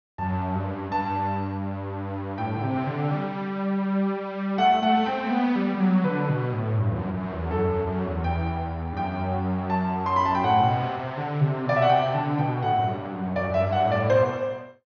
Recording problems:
low-pass filter; nothing above 6.4 kHz

